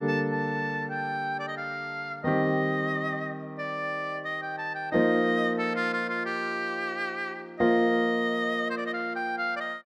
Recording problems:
none

